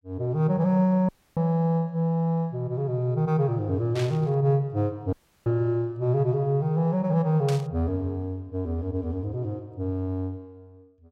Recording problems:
dropout; at 1 s and at 5 s
burst of static; at 4 s and at 7.5 s; peak -6 dB vs average level

